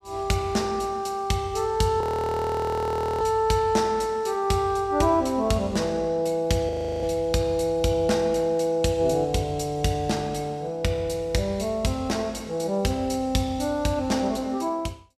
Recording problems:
frozen audio; at 2 s for 1 s and at 6.5 s

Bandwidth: 15 kHz